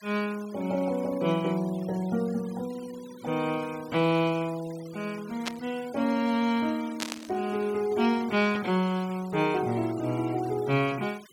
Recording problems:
denoising artefacts; signal-to-artefact ratio 20 dB
burst of static; at 5.5 s and at 7 s; peak +2 dB vs average level

